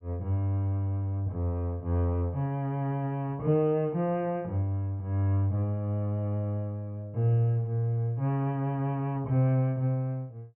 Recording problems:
treble missing; nothing above 3 kHz

